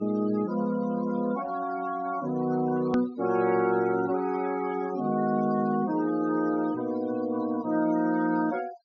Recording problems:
treble cut off; nothing above 6.4 kHz
denoising artefacts; signal-to-artefact ratio 17 dB
edit click; at 3 s

